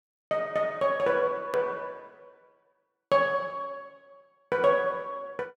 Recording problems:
click at an edit; at 1.5 s

